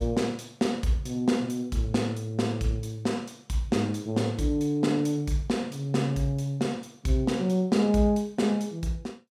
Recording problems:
none

